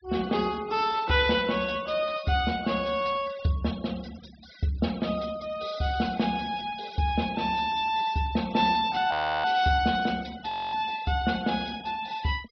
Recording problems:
treble missing; nothing above 5.5 kHz
denoising artefacts; signal-to-artefact ratio 20 dB
audio freezing; at 9 s and at 10 s

